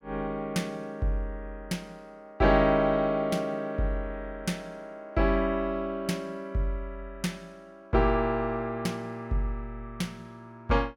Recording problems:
none

